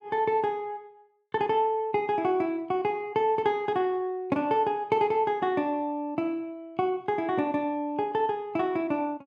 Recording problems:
none

